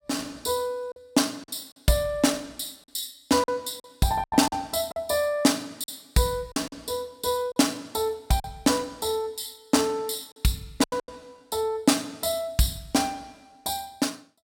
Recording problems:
lost packets; 6% of the sound replaced, filled with silence

